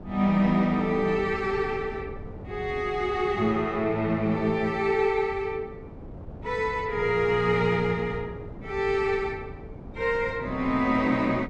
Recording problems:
wind noise; below 310 Hz, SNR 16 dB

